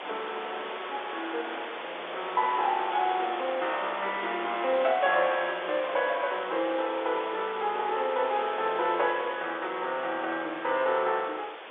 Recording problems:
telephone audio; 300 Hz to 3.6 kHz, G.711
background hiss; SNR 9 dB

